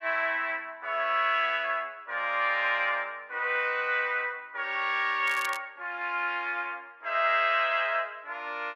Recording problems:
crackling; at 5.5 s; loose cable, SNR 16 dB

